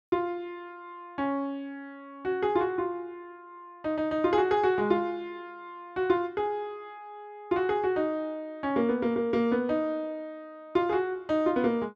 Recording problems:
none

